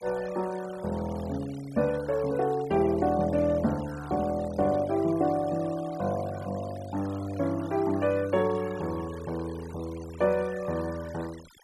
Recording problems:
denoising artefacts; signal-to-artefact ratio 20 dB

